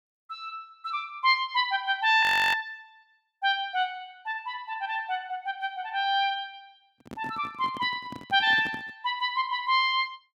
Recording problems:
audio freezing; at 2 s
handling noise; from 7 to 9 s; peak -10 dB vs average level

